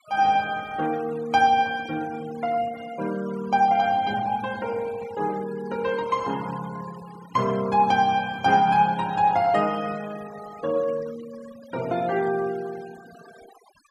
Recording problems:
noise reduction artefacts; signal-to-artefact ratio 20 dB

